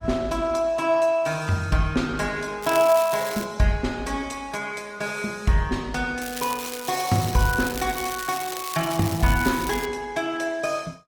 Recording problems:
lossy codec; Opus, log-spectral distance 5 dB, nothing above 18.9 kHz
crackling; at 2.5 s and from 6 to 10 s; loose cable, SNR 10 dB

